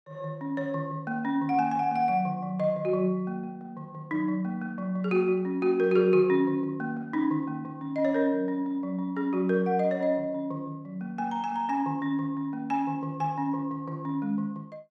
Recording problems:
none

